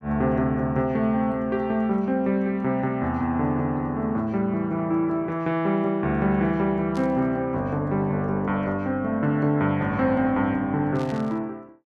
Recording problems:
static burst; at 7 s and at 11 s; peak -15 dB vs average level

